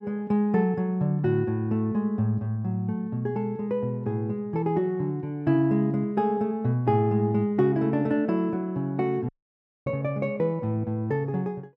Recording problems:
dropout; at 9.5 s for 0.5 s

